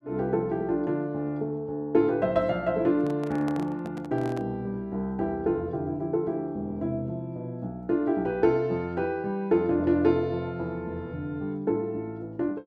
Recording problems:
handling noise; from 3 to 4.5 s; peak -7 dB vs average level

